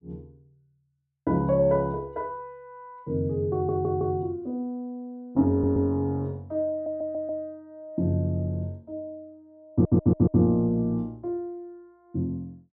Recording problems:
stutter; 4 times, first at 3.5 s

